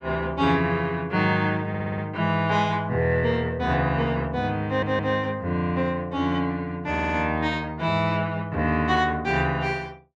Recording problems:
stutter; at 1.5 s, at 4.5 s and at 7 s

